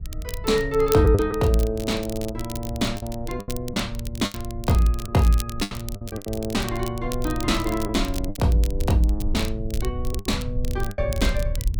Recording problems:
low-frequency rumble; below 74 Hz, SNR 9 dB
crackling; vinyl, SNR 15 dB
lost packets; 7% of the sound replaced, filled with the last packet

